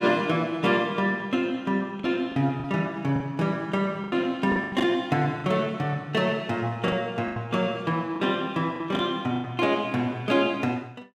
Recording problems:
lost packets; 7% of the sound replaced, filled with the last packet

